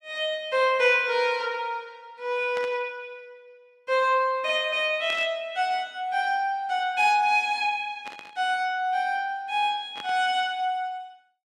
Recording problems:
static burst; 4 times, first at 2.5 s; peak -9 dB vs average level

